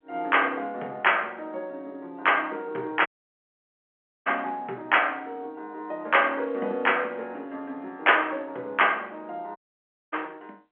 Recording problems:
phone line; 260 Hz to 3.3 kHz, G.711
audio cutting out; at 3 s for 1 s and at 9.5 s for 0.5 s

